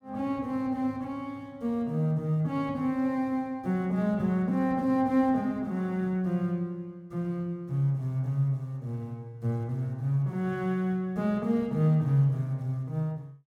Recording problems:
none

